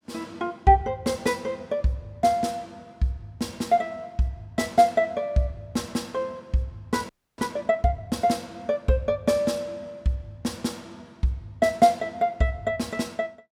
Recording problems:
audio freezing; at 7 s

